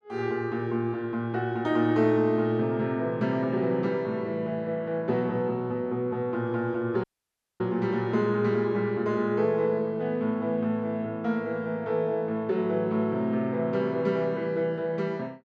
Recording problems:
audio cutting out; at 7 s for 0.5 s

